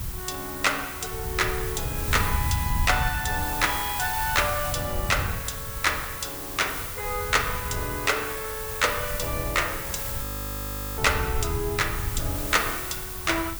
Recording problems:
hiss; SNR 5 dB
wind noise; below 120 Hz, SNR 7 dB
audio freezing; at 10 s for 1 s

